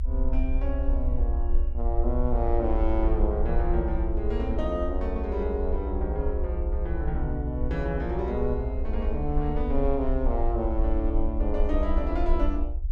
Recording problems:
low-frequency rumble; below 58 Hz, SNR -1 dB

